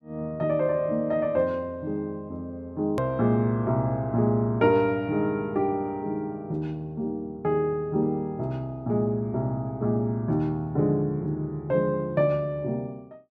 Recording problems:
edit click; at 3 s

